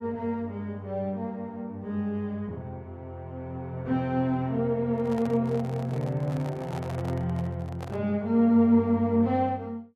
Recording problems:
handling noise; from 5 to 8 s; peak -8 dB vs average level

